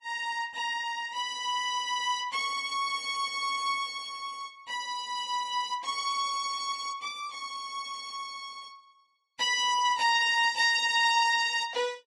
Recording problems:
lossy codec; Vorbis, log-spectral distance 3 dB, nothing above 11 kHz

